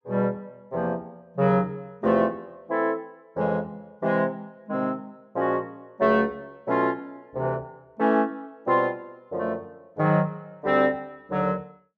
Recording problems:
none

